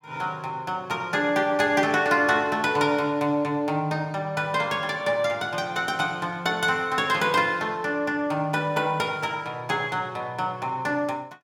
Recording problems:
none

